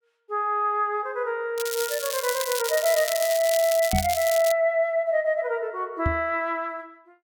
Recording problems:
crackle; from 1.5 to 4.5 s; loose cable, SNR 6 dB
microphone thump; at 4 s and at 6 s; peak +2 dB vs average level

